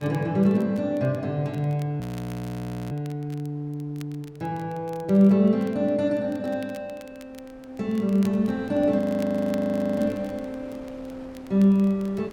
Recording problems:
wind on the microphone; below 910 Hz, SNR 25 dB
crackle; vinyl, SNR 28 dB
audio freezing; at 2 s for 1 s and at 9 s for 1 s

